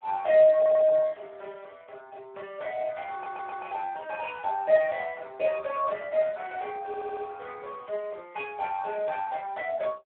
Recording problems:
telephone audio; 280 Hz to 3.7 kHz, Speex
stutter; at 0.5 s, at 3 s and at 7 s

